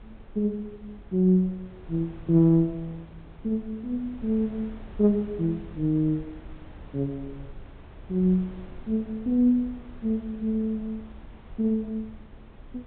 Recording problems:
low-pass filter; nothing above 4 kHz
wind on the microphone; below 180 Hz, SNR 20 dB

